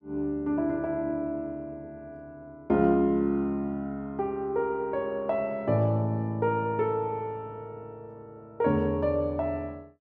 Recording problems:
none

